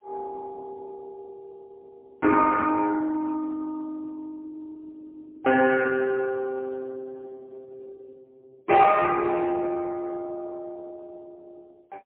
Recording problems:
telephone audio; 280 Hz to 2.8 kHz, AMR-NB, then MP3

